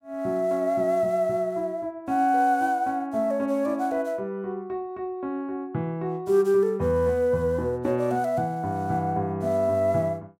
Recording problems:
none

